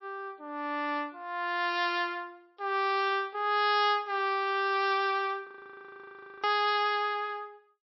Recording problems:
lossy codec; MP3, log-spectral distance 2 dB, nothing above 4.6 kHz
audio freezing; at 5.5 s for 1 s

